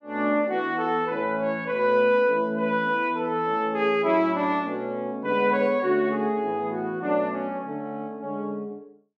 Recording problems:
none

